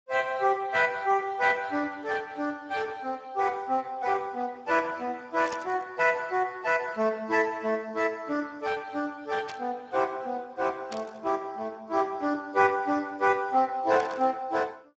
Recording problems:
lossy codec; Speex, log-spectral distance 4 dB
burst of static; 4 times, first at 5.5 s; peak -7 dB vs average level

